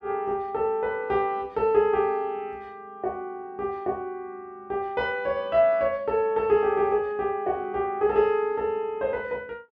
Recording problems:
none

